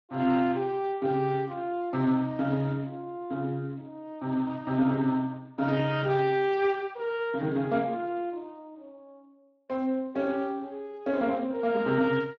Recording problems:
lossy compression; Speex, log-spectral distance 2 dB

